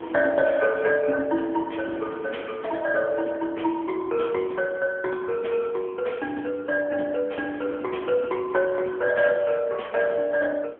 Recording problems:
telephone audio; 240 Hz to 3.3 kHz, AMR-NB
wind on the microphone; below 790 Hz, SNR 20 dB

